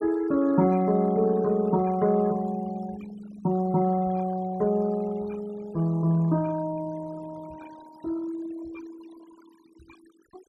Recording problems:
denoising artefacts; signal-to-artefact ratio 22 dB

